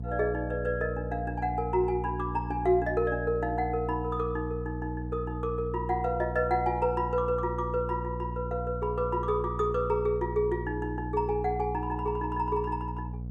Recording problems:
hum; 60 Hz, harmonics up to 480 Hz, SNR 7 dB

